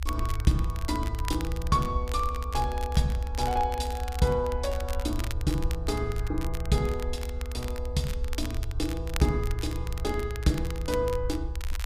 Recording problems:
rumble; below 72 Hz, SNR 4 dB
crackling; vinyl, SNR 13 dB

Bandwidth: 15 kHz